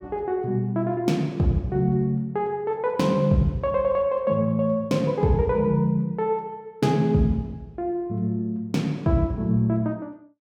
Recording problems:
none

